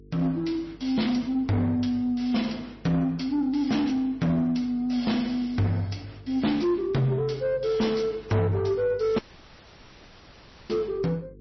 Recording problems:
lossy codec; MP3, log-spectral distance 6 dB, nothing above 5.8 kHz
distorted audio; soft clipping, signal-to-distortion ratio 11 dB
hum; 50 Hz, harmonics up to 450 Hz, SNR 25 dB
dropout; at 9 s for 1.5 s

